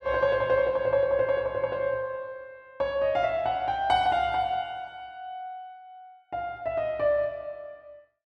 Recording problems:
none

